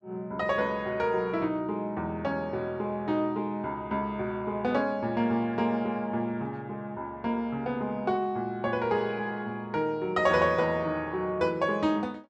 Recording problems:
none

